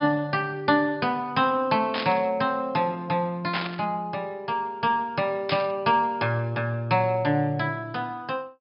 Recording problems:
treble missing; nothing above 5.5 kHz
burst of static; at 2 s, at 3.5 s and at 5.5 s; peak +1 dB vs average level

